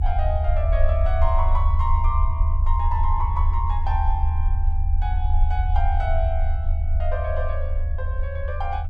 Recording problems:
rumble; below 76 Hz, strongest tone 24 Hz, SNR -6 dB

